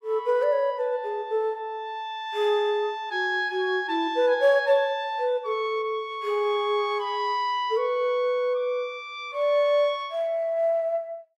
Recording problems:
none

